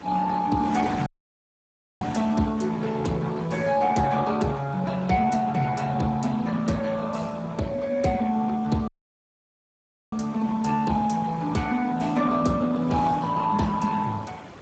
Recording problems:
codec artefacts; Speex, log-spectral distance 4 dB, nothing above 7.6 kHz
wind on the microphone; below 1.5 kHz, SNR 16 dB
audio cutting out; at 1 s for 1 s and at 9 s for 1 s

